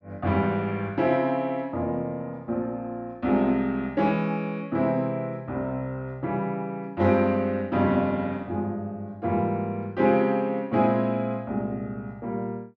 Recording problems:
none

